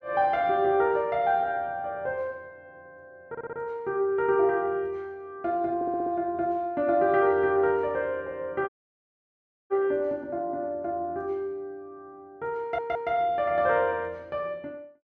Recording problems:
audio stuttering; at 3.5 s, at 6 s and at 13 s
audio cutting out; at 8.5 s for 1 s

